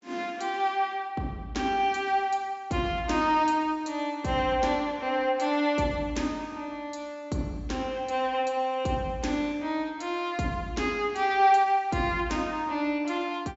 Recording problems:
treble missing; nothing above 8 kHz

